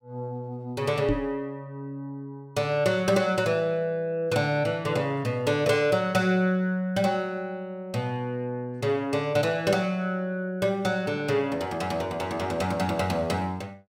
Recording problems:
microphone thump; at 1 s; peak +3 dB vs average level

